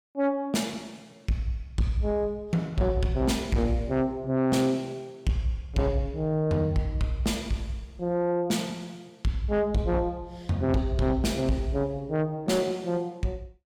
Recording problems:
distorted audio; soft clipping, signal-to-distortion ratio 12 dB

